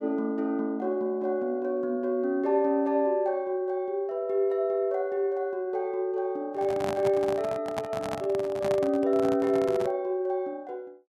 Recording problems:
handling noise; from 6.5 to 10 s; peak -2 dB vs average level

